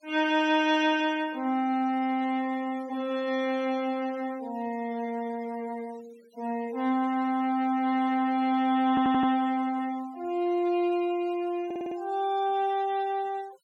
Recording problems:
noise reduction artefacts; signal-to-artefact ratio 24 dB
audio stuttering; at 9 s and at 12 s

